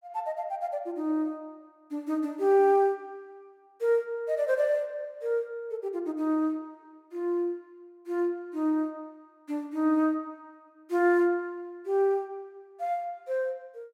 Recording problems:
none

